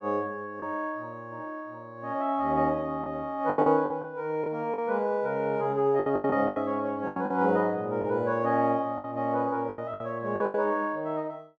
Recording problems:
lost packets; 9% of the sound replaced, filled with the last packet

